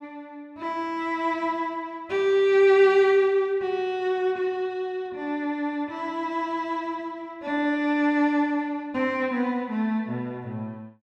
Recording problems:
none

